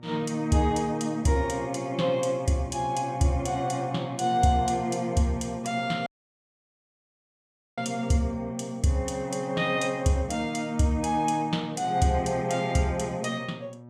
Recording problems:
electrical hum; 60 Hz, harmonics up to 1.2 kHz, SNR 21 dB
audio cutting out; at 6 s for 1.5 s

